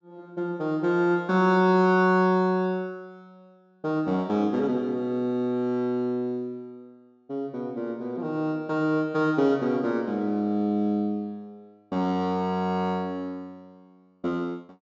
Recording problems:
treble cut off; nothing above 8 kHz

